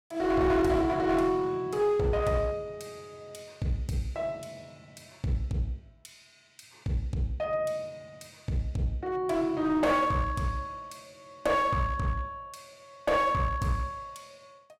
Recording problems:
distortion; hard clipping, uneven, signal-to-distortion ratio 9 dB

